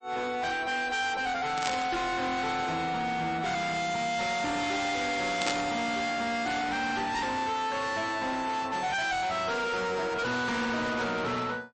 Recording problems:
lossy compression; MP3, log-spectral distance 4 dB, nothing above 8 kHz
distorted audio; soft clipping, signal-to-distortion ratio 7 dB
burst of static; at 1.5 s and at 5.5 s; peak +3 dB vs average level

